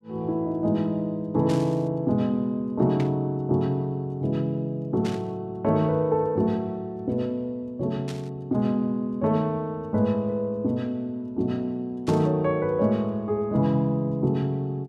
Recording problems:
burst of static; 5 times, first at 1.5 s; peak -9 dB vs average level

